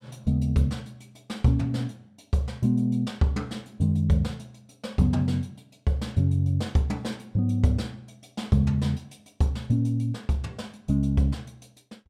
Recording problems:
none

